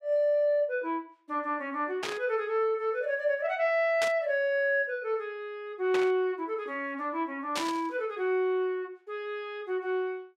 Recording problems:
static burst; 4 times, first at 2 s; peak +1 dB vs average level

